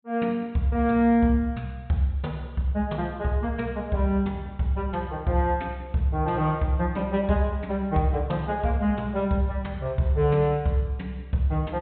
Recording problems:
treble missing; nothing above 4 kHz

